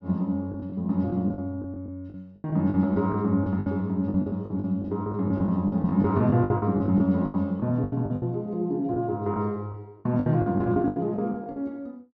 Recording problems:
packet loss; 15% of the sound replaced, filled with the last packet

